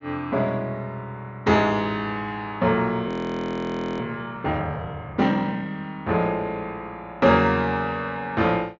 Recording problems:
low-pass filter; nothing above 7.3 kHz
audio freezing; at 3 s for 1 s

